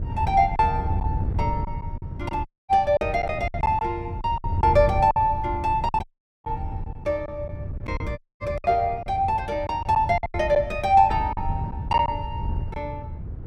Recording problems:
wind noise; below 120 Hz, SNR 8 dB
packet loss; 8% of the sound replaced, filled with silence
dropout; at 2.5 s, at 6 s and at 8 s

